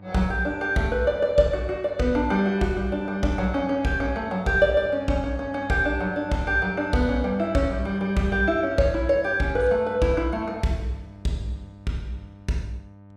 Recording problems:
electrical hum; 50 Hz, harmonics up to 1.2 kHz, SNR 21 dB

